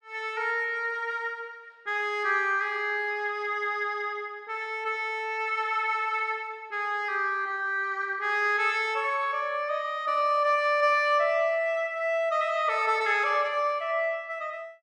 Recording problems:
none

